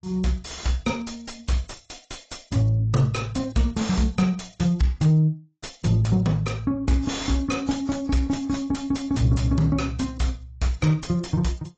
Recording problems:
codec artefacts; AAC, log-spectral distance 5 dB, nothing above 7.3 kHz
distorted audio; soft clipping, signal-to-distortion ratio 9 dB

